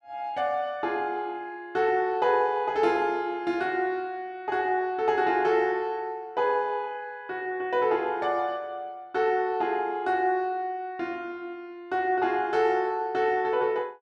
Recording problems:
none

